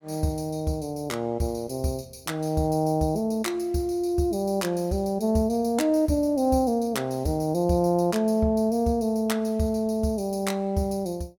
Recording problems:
none

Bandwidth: 17 kHz